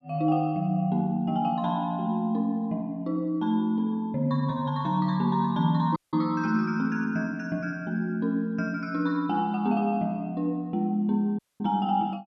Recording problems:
dropout; at 6 s and at 11 s

